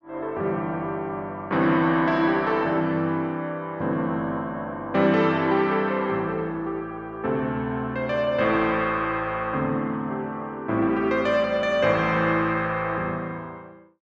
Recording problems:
none

